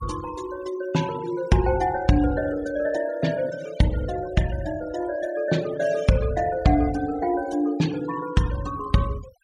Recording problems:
noise reduction artefacts; signal-to-artefact ratio 18 dB

